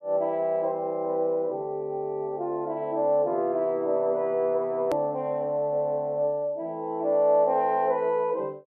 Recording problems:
click at an edit; at 5 s

